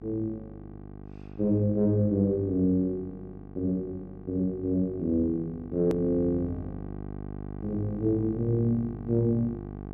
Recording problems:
hum; 50 Hz, harmonics up to 1.2 kHz, SNR 13 dB
hard cut with a click; at 6 s

